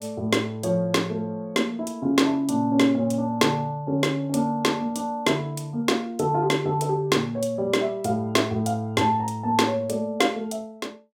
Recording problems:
none

